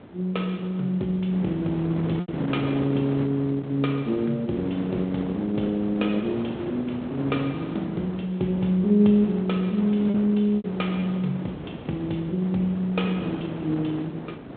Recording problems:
telephone audio; 150 Hz to 3.8 kHz, G.726
wind noise; below 560 Hz, SNR 10 dB
packet loss; 1.5% of the sound replaced, filled with repeated pitch periods

